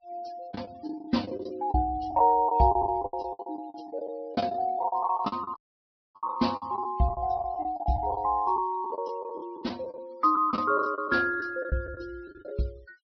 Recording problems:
low-pass filter; nothing above 5.5 kHz
denoising artefacts; signal-to-artefact ratio 27 dB
packet loss; 15% of the sound replaced, filled with the last packet
dropout; at 5.5 s for 0.5 s

